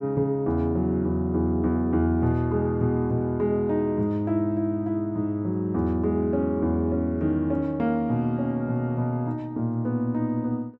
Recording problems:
none

